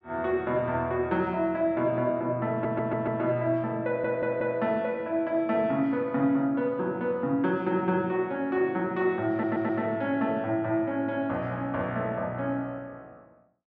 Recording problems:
stutter; at 2.5 s, at 4 s and at 9.5 s

